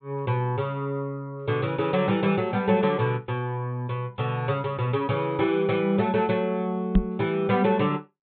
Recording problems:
low-pass filter; nothing above 4 kHz
microphone bump; at 7 s; peak +9 dB vs average level

